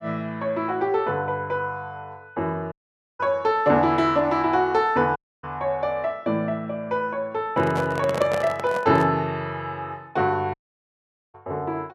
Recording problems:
dropout; at 2.5 s, at 5 s and at 11 s for 1 s
microphone handling noise; from 7.5 to 9 s; peak +1 dB vs average level

